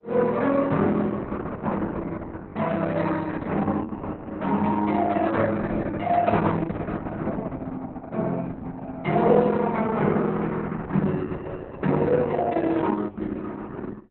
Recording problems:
lossy compression; Opus, log-spectral distance 3 dB, nothing above 4 kHz

